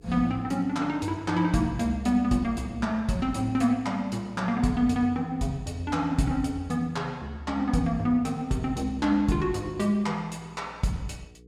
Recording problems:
hum; 60 Hz, harmonics up to 480 Hz, SNR 26 dB

